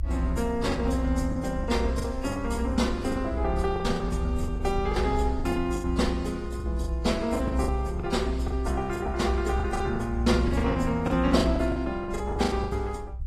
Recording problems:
lossy compression; AAC, log-spectral distance 2 dB, nothing above 13.5 kHz
rumble; below 68 Hz, strongest tone 62 Hz, SNR 5 dB
lost packets; 13% of the sound replaced, filled with the last packet

